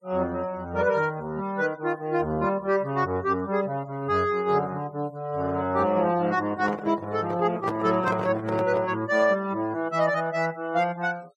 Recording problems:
denoising artefacts; signal-to-artefact ratio 24 dB
microphone handling noise; from 6.5 to 9 s; peak -1 dB vs average level

